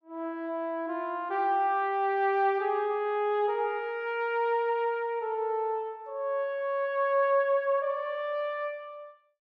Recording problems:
none

